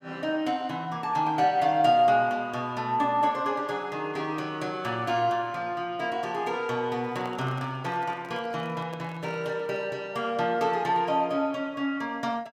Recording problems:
handling noise; from 7 to 10 s; peak -10 dB vs average level

